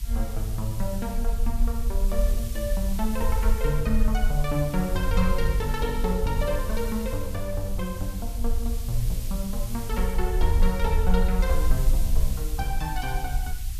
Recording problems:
background hiss; slope +5 dB per octave, SNR 12 dB
rumble; below 50 Hz, strongest tone 20 Hz, SNR 0 dB

